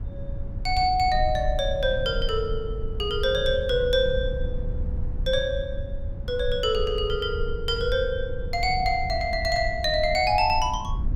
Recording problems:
low-frequency rumble; below 76 Hz, SNR 8 dB

